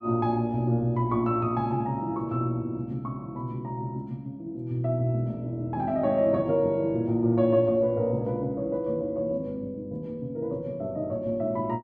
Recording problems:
none

